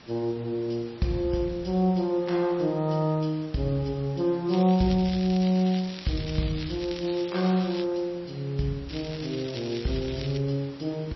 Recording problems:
codec artefacts; MP3, log-spectral distance 7 dB, nothing above 5.7 kHz
background hiss; slope -3 dB per octave, SNR 22 dB
crackle; from 4.5 to 8 s and from 9 to 10 s; loose cable, SNR 14 dB

